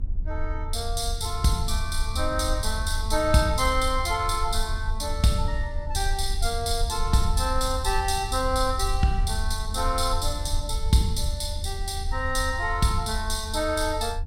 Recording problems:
rumble; below 78 Hz, SNR 5 dB

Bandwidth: 16.5 kHz